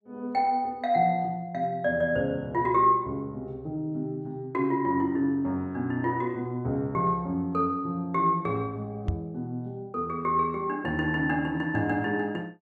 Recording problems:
knock on the microphone; at 9 s; peak +4 dB vs average level

